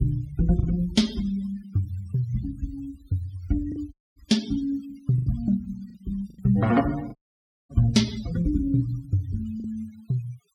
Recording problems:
denoising artefacts; signal-to-artefact ratio 19 dB
packet loss; 4% of the sound replaced, filled with the last packet
audio cutting out; at 4 s and at 7 s for 0.5 s

